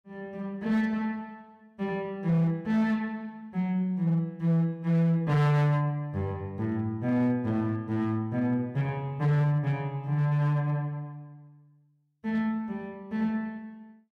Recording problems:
distortion; hard clipping, uneven, signal-to-distortion ratio 10 dB

